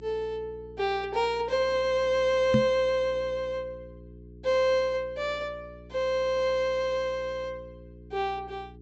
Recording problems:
treble cut off; nothing above 8 kHz
hum; 60 Hz, harmonics up to 420 Hz, SNR 20 dB
microphone bump; at 2.5 s; peak +7 dB vs average level

